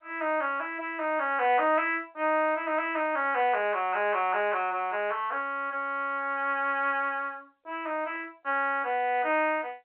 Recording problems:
telephone audio; 300 Hz to 3.1 kHz, G.711
static burst; at 3.5 s and at 8 s; peak -16 dB vs average level

